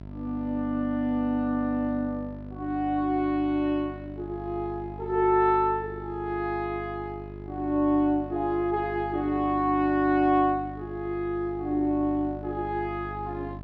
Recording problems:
hum; 50 Hz, harmonics up to 950 Hz, SNR 14 dB

